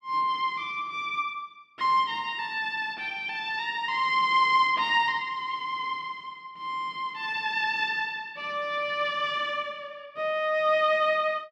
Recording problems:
none

